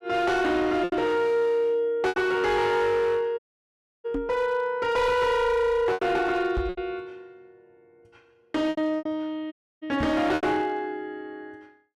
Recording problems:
distorted audio; hard clipping, signal-to-distortion ratio 11 dB
packet loss; 6% of the sound replaced, filled with repeated pitch periods
dropout; at 3.5 s for 0.5 s and at 9.5 s
microphone thump; at 4 s, at 6.5 s and at 10 s; peak -2 dB vs average level

